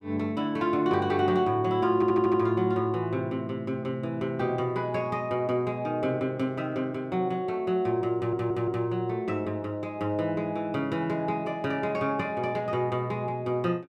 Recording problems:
stutter; at 2 s and at 8 s

